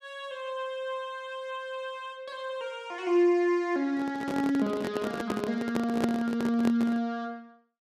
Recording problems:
microphone handling noise; from 4 to 7 s; peak +4 dB vs average level

